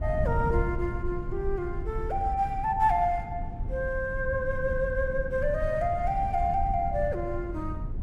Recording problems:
rumble; below 72 Hz, SNR 9 dB
wind on the microphone; below 140 Hz, SNR 9 dB

